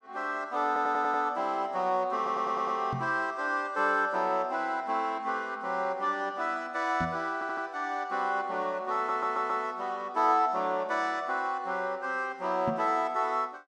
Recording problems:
audio stuttering; 4 times, first at 0.5 s
knock on the microphone; at 3 s, at 7 s and at 13 s; peak -1 dB vs average level

